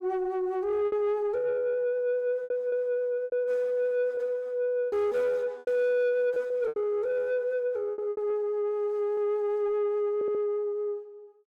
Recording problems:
distortion; soft clipping, signal-to-distortion ratio 12 dB
packet loss; 6% of the sound replaced, filled with repeated pitch periods
stutter; at 10 s

